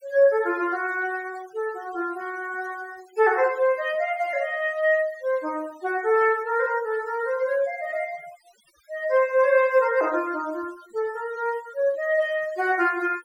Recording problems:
denoising artefacts; signal-to-artefact ratio 22 dB

